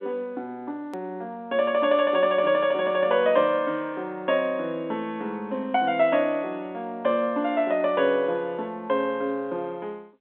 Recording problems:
phone line; 190 Hz to 3.5 kHz, G.711
click at an edit; at 1 s

